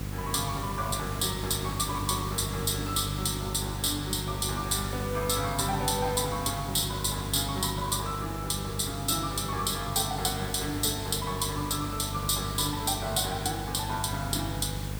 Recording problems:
hum; 50 Hz, harmonics up to 800 Hz, SNR 7 dB
hiss; SNR 11 dB

